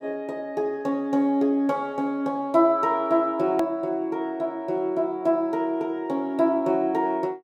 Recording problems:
click at an edit; at 3.5 s

